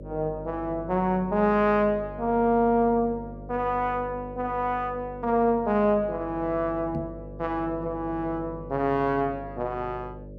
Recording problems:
hum; 50 Hz, harmonics up to 600 Hz, SNR 15 dB
microphone bump; at 7 s; peak -2 dB vs average level

